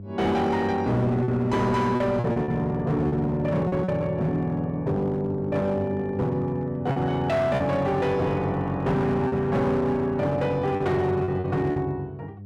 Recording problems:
distortion; hard clipping, signal-to-distortion ratio 11 dB
hum; 50 Hz, harmonics up to 500 Hz, SNR 17 dB
lost packets; 5% of the sound replaced, filled with repeated pitch periods

